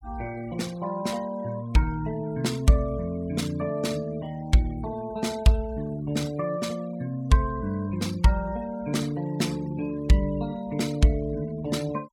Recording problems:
noise reduction artefacts; signal-to-artefact ratio 22 dB

